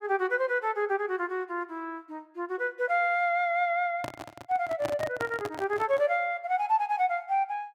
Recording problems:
microphone handling noise; from 4 to 6 s; peak -2 dB vs average level

